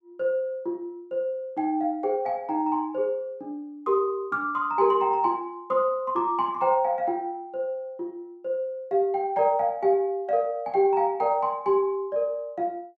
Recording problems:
none

